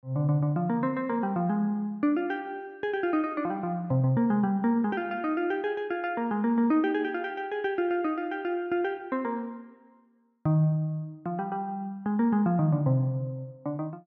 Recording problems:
none

